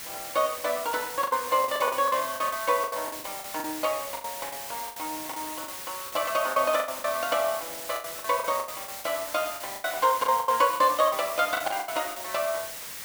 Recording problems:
hiss; slope +1 dB per octave, SNR 8 dB
packet loss; 15% of the sound replaced, filled with the last packet
burst of static; at 2 s; peak -11 dB vs average level

